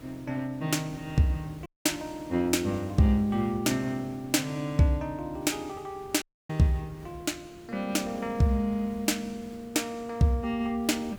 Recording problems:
hiss; SNR 21 dB
audio cutting out; at 1.5 s and at 6 s

